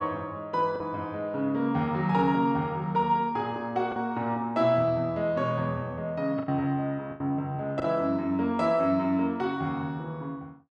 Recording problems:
packet loss; 3% of the sound replaced, filled with the last packet

